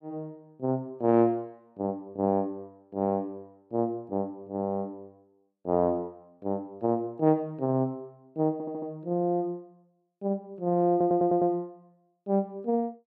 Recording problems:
stutter; at 8.5 s and at 11 s

